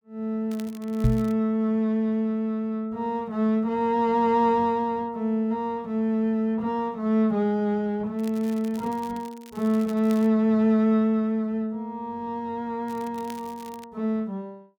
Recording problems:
crackle; at 0.5 s, from 8 to 10 s and from 13 to 14 s; loose cable, SNR 24 dB
microphone thump; at 1 s; peak +6 dB vs average level

